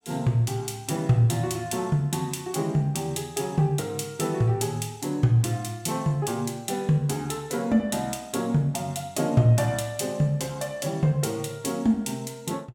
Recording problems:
none

